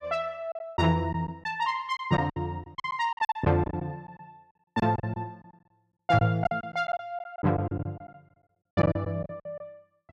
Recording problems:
packet loss; 13% of the sound replaced, filled with silence

